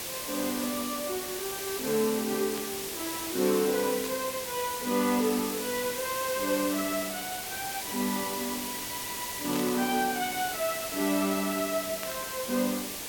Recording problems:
hiss; SNR 3 dB
burst of static; 4 times, first at 2.5 s; peak -5 dB vs average level

